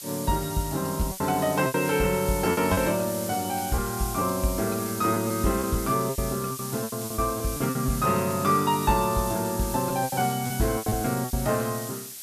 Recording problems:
background hiss; SNR 9 dB
packet loss; 9% of the sound replaced, filled with repeated pitch periods

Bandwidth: 14 kHz